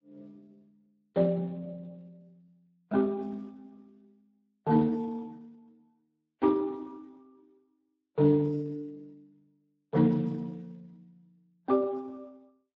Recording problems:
lossy codec; MP3, then Speex, log-spectral distance 2 dB

